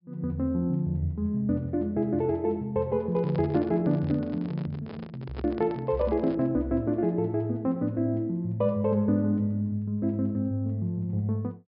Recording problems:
low-pass filter; nothing above 5.5 kHz
microphone handling noise; from 3 to 6.5 s; peak -6 dB vs average level

